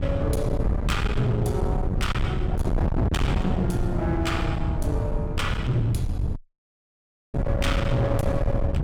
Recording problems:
distortion; hard clipping, signal-to-distortion ratio 9 dB
wind on the microphone; below 160 Hz, SNR 0 dB
dropout; at 6.5 s for 1 s

